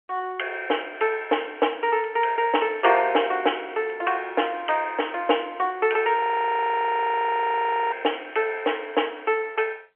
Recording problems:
phone line; 340 Hz to 3.2 kHz, G.711
crackle; from 1.5 to 4 s and from 8 to 9.5 s; loose cable, SNR 27 dB
frozen audio; at 6 s for 1.5 s

